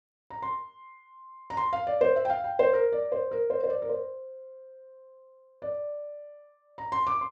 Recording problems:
none

